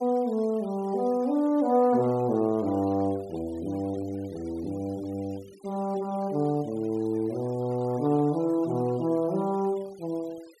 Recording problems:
denoising artefacts; signal-to-artefact ratio 25 dB

